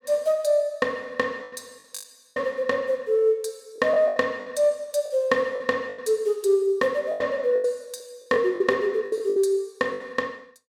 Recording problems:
lost packets; 10% of the sound replaced, filled with the last packet

